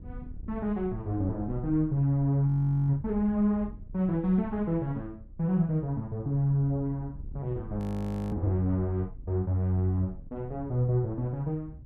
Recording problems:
wind on the microphone; below 100 Hz, SNR 16 dB
frozen audio; at 2.5 s and at 8 s for 0.5 s

